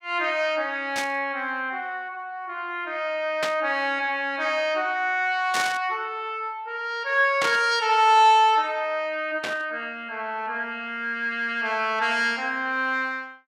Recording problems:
static burst; 5 times, first at 1 s; peak 0 dB vs average level

